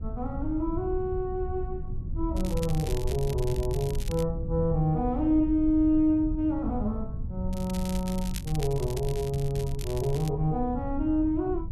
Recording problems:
low-frequency rumble; below 88 Hz, SNR 7 dB
crackle; from 2.5 to 4.5 s and from 7.5 to 10 s; loose cable, SNR 15 dB

